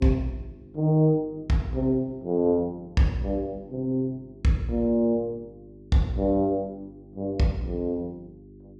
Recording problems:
electrical hum; 50 Hz, harmonics up to 400 Hz, SNR 22 dB

